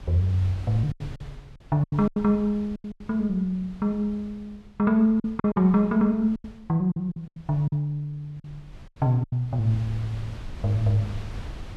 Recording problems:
wind noise; below 140 Hz, SNR 17 dB
lost packets; 9% of the sound replaced, filled with silence

